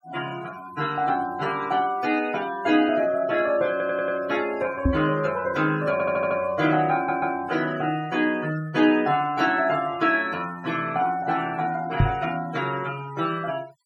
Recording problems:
noise reduction artefacts; signal-to-artefact ratio 19 dB
stutter; at 3.5 s, at 6 s and at 7 s
microphone bump; at 5 s and at 12 s; peak +6 dB vs average level

